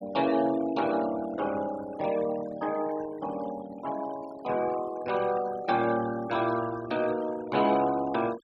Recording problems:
denoising artefacts; signal-to-artefact ratio 16 dB

